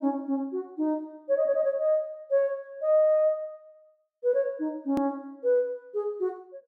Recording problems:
hard cut with a click; at 5 s

